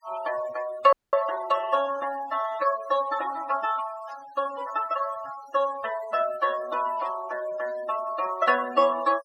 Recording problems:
denoising artefacts; signal-to-artefact ratio 16 dB
audio freezing; at 1 s
burst of static; at 4 s and at 7 s; peak -19 dB vs average level

